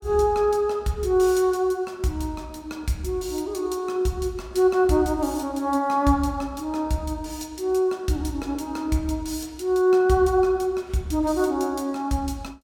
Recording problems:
none

